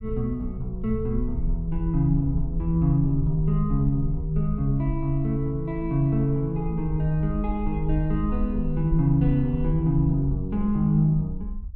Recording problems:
low-frequency rumble; below 56 Hz, SNR 8 dB

